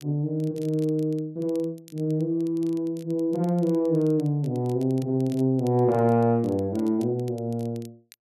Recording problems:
crackling; vinyl, SNR 28 dB

